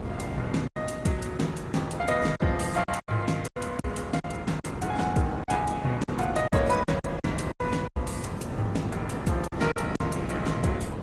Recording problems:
lossy compression; AAC, then Opus, log-spectral distance 4 dB, nothing above 15.5 kHz
wind noise; below 450 Hz, SNR 7 dB
lost packets; 9% of the sound replaced, filled with silence

